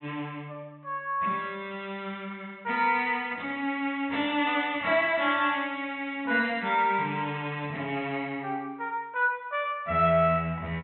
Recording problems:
treble missing; nothing above 4 kHz

